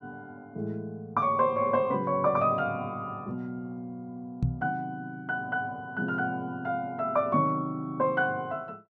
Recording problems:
knock on the microphone; at 4.5 s; peak +5 dB vs average level

